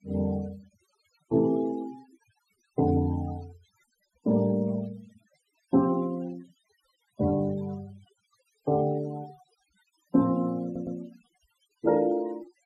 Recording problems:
noise reduction artefacts; signal-to-artefact ratio 23 dB
audio stuttering; at 11 s

